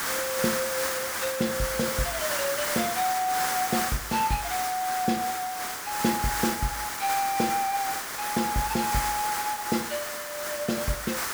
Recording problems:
hiss; SNR 1 dB

